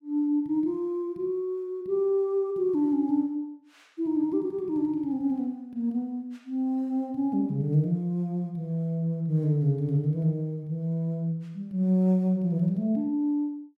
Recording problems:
none

